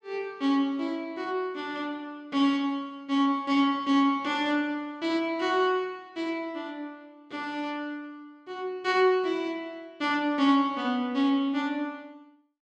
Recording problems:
none

